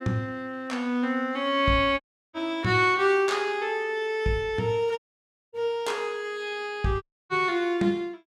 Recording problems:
dropout; at 2 s, at 5 s for 0.5 s and at 7 s

